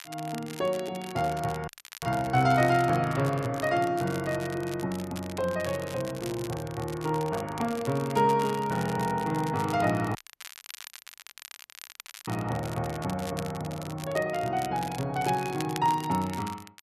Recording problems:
crackling; vinyl, SNR 15 dB
audio cutting out; at 1.5 s and at 10 s for 2 s

